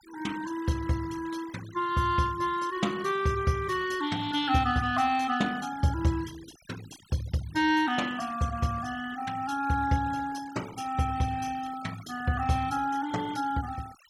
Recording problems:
noise reduction artefacts; signal-to-artefact ratio 18 dB

